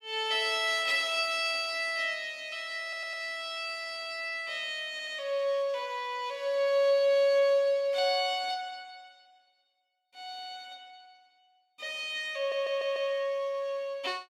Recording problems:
audio stuttering; at 3 s, at 5 s and at 12 s

